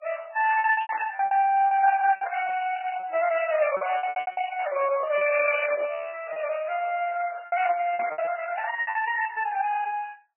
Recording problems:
codec artefacts; Opus, then MP3, log-spectral distance 4 dB, nothing above 2.4 kHz
packet loss; 11% of the sound replaced, filled with repeated pitch periods
static burst; at 1 s and at 8 s; peak -9 dB vs average level

